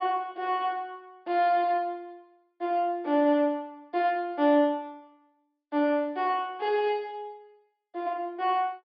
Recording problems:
treble cut off; nothing above 5.5 kHz

